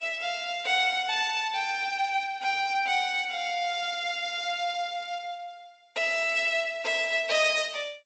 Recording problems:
lossy compression; Vorbis, then G.722, log-spectral distance 4 dB, nothing above 8 kHz

